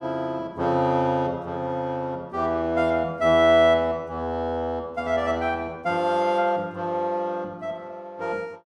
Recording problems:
none

